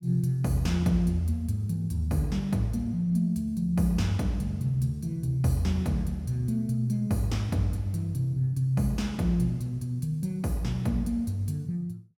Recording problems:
none

